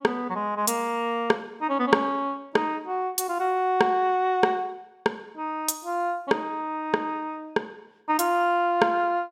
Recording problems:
none

